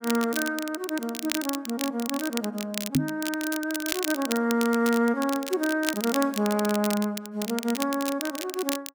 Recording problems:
crackling; vinyl, SNR 7 dB
microphone thump; at 3 s; peak +8 dB vs average level

